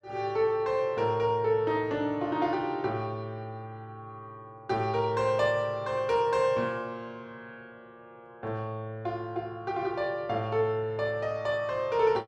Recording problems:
none

